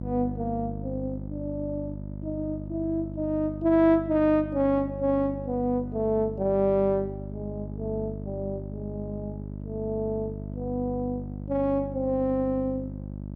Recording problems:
mains hum; 50 Hz, harmonics up to 650 Hz, SNR 9 dB

